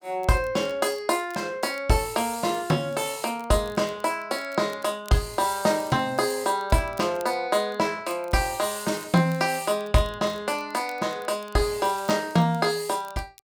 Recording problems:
crackle; vinyl, SNR 26 dB

